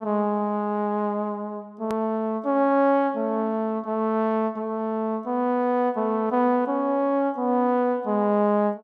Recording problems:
edit click; at 2 s

